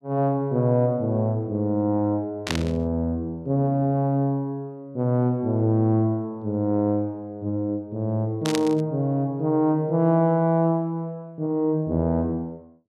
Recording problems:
static burst; at 2.5 s and at 8.5 s; peak +1 dB vs average level

